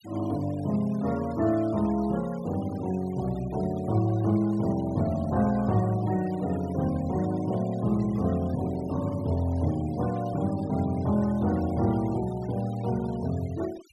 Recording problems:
noise reduction artefacts; signal-to-artefact ratio 21 dB

